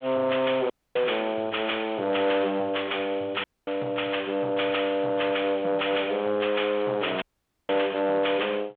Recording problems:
telephone audio; 280 Hz to 3.5 kHz, G.726
distortion; soft clipping, signal-to-distortion ratio 11 dB
audio cutting out; at 0.5 s, at 3.5 s and at 7 s

